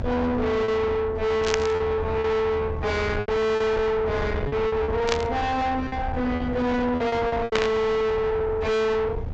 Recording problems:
low-pass filter; nothing above 8 kHz
distortion; soft clipping, signal-to-distortion ratio 6 dB
rumble; below 520 Hz, SNR 7 dB
lost packets; 7% of the sound replaced, filled with repeated pitch periods
static burst; at 1.5 s, at 5 s and at 7.5 s; peak +2 dB vs average level

